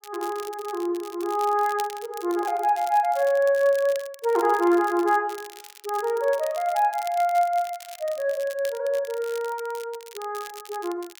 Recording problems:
crackling; vinyl, SNR 19 dB

